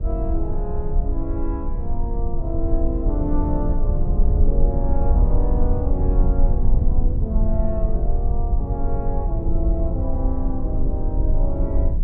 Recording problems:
low-frequency rumble; below 60 Hz, strongest tone 22 Hz, SNR -6 dB

